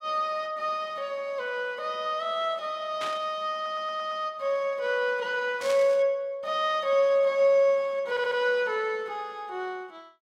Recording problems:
static burst; at 3 s and at 5.5 s; peak -5 dB vs average level
stutter; at 3.5 s and at 8 s

